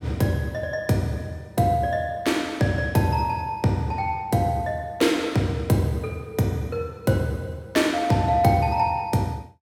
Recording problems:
none

